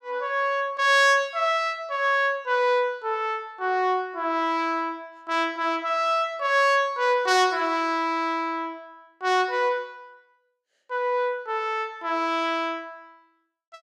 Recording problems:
none

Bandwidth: 14.5 kHz